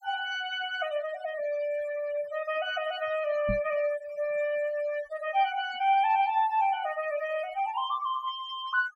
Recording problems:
noise reduction artefacts; signal-to-artefact ratio 16 dB
knock on the microphone; at 3.5 s; peak 0 dB vs average level

